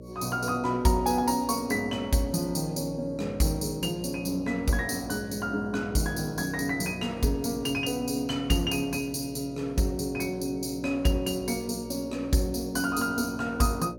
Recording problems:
hum; 60 Hz, harmonics up to 600 Hz, SNR 14 dB

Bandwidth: 17.5 kHz